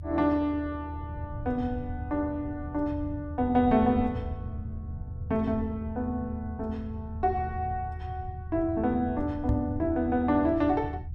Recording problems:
rumble; below 110 Hz, strongest tone 78 Hz, SNR 9 dB
microphone thump; at 9.5 s; peak +3 dB vs average level

